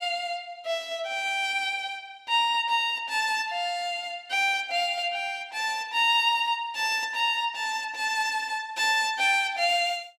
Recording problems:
none

